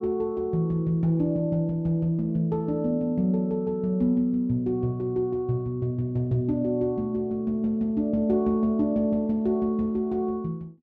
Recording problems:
none

